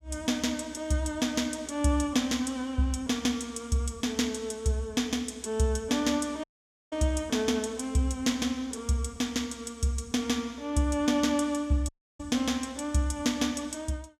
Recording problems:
dropout; at 6.5 s and at 12 s

